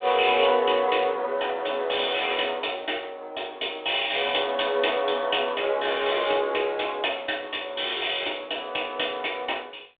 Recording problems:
telephone audio; 320 Hz to 3.6 kHz, G.726

